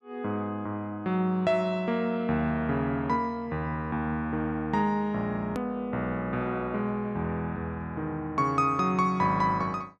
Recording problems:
edit click; at 5.5 s

